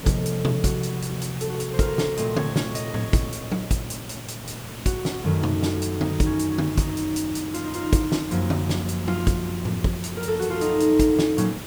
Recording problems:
hiss; slope -4 dB per octave, SNR 12 dB

